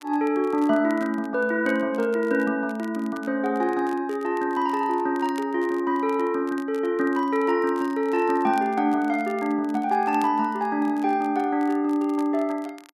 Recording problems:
crackle; vinyl, SNR 27 dB

